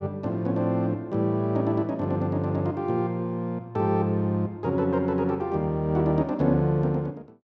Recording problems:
none

